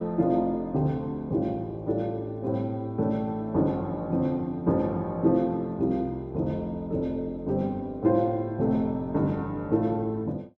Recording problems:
none

